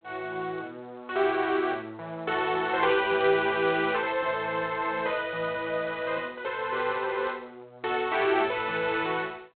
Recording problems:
telephone audio; 220 Hz to 3.9 kHz, G.726

